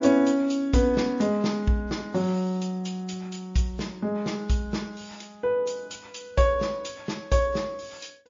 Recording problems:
lossy compression; MP3, log-spectral distance 3 dB, nothing above 6.9 kHz

